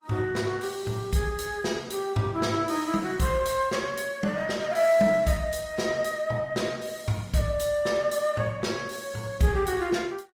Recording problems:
lossy codec; Opus, log-spectral distance 4 dB

